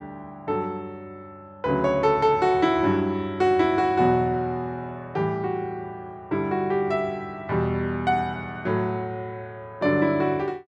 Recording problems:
none

